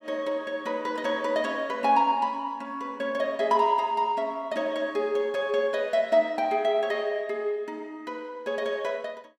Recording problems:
none

